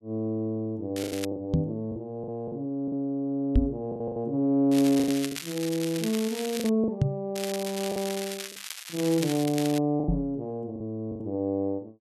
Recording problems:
lost packets; 8% of the sound replaced, filled with the last packet
crackling; at 1 s, from 4.5 to 6.5 s and from 7.5 to 10 s; loose cable, SNR 8 dB
microphone thump; 4 times, first at 1.5 s; peak +9 dB vs average level

